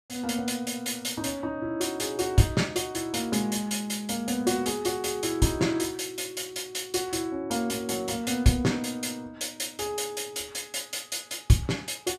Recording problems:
none

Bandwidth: 15 kHz